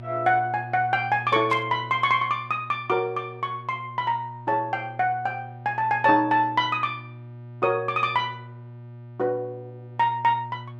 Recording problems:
hum; 60 Hz, harmonics up to 600 Hz, SNR 17 dB
static burst; at 1.5 s; peak -10 dB vs average level

